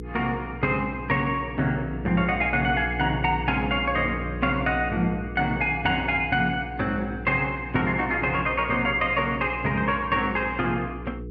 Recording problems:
electrical hum; 60 Hz, harmonics up to 480 Hz, SNR 11 dB

